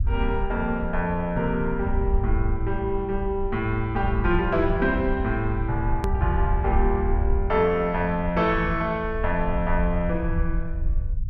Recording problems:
rumble; below 70 Hz, SNR 4 dB
click at an edit; at 6 s

